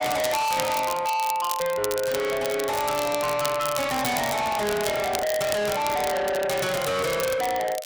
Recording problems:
distortion; soft clipping, signal-to-distortion ratio 6 dB
crackling; vinyl, SNR 9 dB
handling noise; from 4 to 6 s; peak -6 dB vs average level

